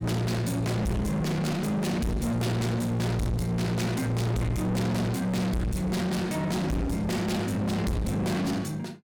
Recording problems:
distortion; soft clipping, signal-to-distortion ratio 6 dB

